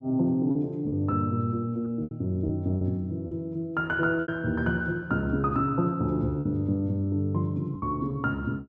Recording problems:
packet loss; 6% of the sound replaced, filled with repeated pitch periods

